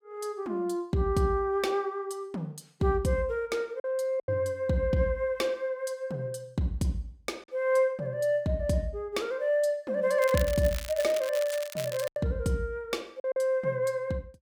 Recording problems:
packet loss; 2% of the sound replaced, filled with silence
crackle; from 10 to 12 s; loose cable, SNR 11 dB

